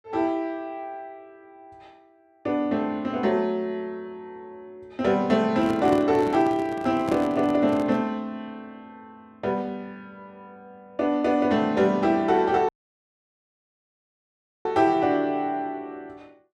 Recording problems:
handling noise; from 5.5 to 8 s; peak -3 dB vs average level
dropout; at 13 s for 2 s

